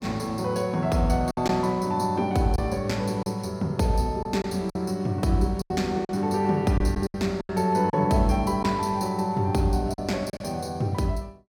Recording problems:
packet loss; 6% of the sound replaced, filled with silence

